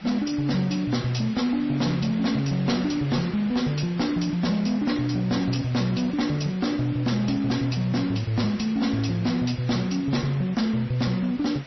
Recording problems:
lossy codec; MP3, then MP3, log-spectral distance 4 dB, nothing above 5.8 kHz
distorted audio; hard clipping, signal-to-distortion ratio 11 dB
background hiss; SNR 19 dB

